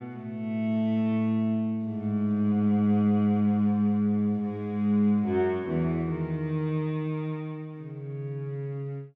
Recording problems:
none

